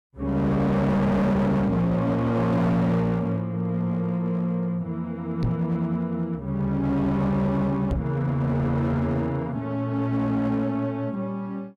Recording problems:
distorted audio; hard clipping, signal-to-distortion ratio 8 dB
microphone thump; at 5.5 s and at 8 s; peak +2 dB vs average level

